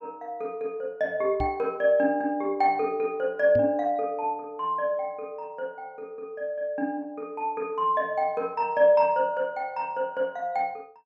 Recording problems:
microphone bump; at 1.5 s and at 3.5 s; peak -2 dB vs average level

